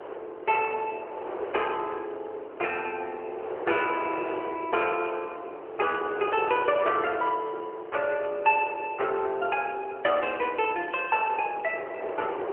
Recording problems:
telephone audio; 320 Hz to 3.2 kHz, AMR-NB
wind on the microphone; below 810 Hz, SNR 10 dB

